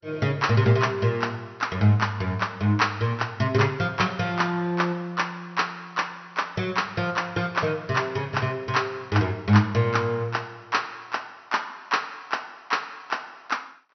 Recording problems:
codec artefacts; MP2, log-spectral distance 5 dB, nothing above 6 kHz

